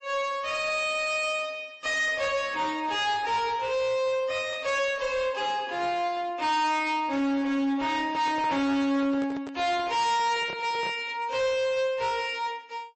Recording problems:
lossy codec; MP3, log-spectral distance 2 dB, nothing above 7.6 kHz
distortion; hard clipping, uneven, signal-to-distortion ratio 7 dB
handling noise; from 8 to 11 s; peak -9 dB vs average level

